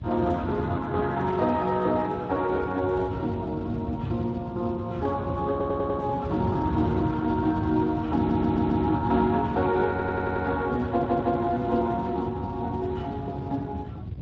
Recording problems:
lossy compression; MP3, then Speex, log-spectral distance 3 dB, nothing above 7.3 kHz
hum; 50 Hz, harmonics up to 800 Hz, SNR 24 dB
wind noise; below 170 Hz, SNR 8 dB
audio stuttering; 4 times, first at 5.5 s

